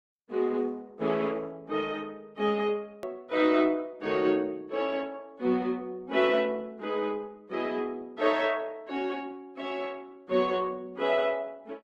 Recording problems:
lossy compression; Opus, log-spectral distance 3 dB
hard cut with a click; at 3 s

